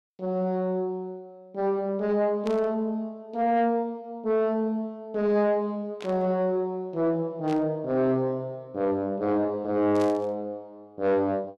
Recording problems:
distortion; soft clipping, signal-to-distortion ratio 11 dB
static burst; 4 times, first at 2.5 s; peak -10 dB vs average level

